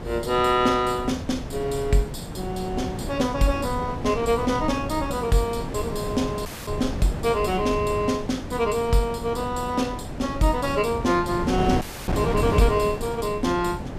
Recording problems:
wind noise; below 420 Hz, SNR 7 dB
audio cutting out; at 6.5 s and at 12 s

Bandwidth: 14.5 kHz